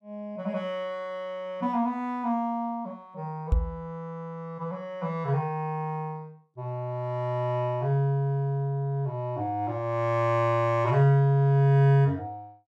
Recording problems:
microphone bump; at 3.5 s; peak +6 dB vs average level

